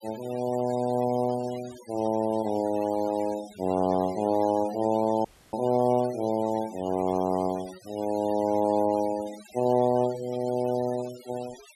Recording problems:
denoising artefacts; signal-to-artefact ratio 19 dB
audio cutting out; at 5.5 s

